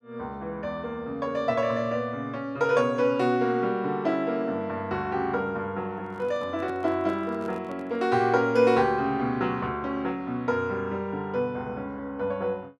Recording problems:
handling noise; from 6 to 8 s; peak -11 dB vs average level

